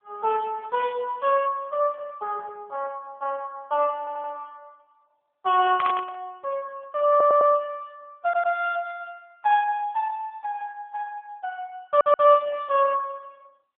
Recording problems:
phone line; 320 Hz to 3.3 kHz, AMR-NB
stutter; 4 times, first at 4 s
static burst; at 6 s; peak -1 dB vs average level

